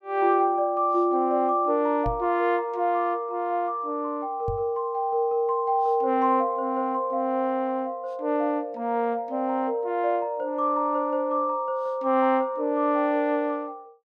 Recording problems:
knock on the microphone; at 2 s and at 4.5 s; peak -4 dB vs average level

